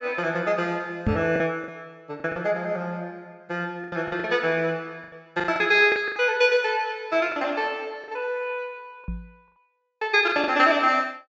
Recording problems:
low-pass filter; nothing above 8 kHz
lost packets; 8% of the sound replaced, filled with the last packet
microphone thump; at 1 s and at 9 s; peak +3 dB vs average level

